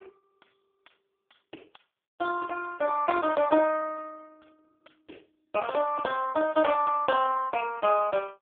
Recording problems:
phone line; 280 Hz to 3.4 kHz, AMR-NB

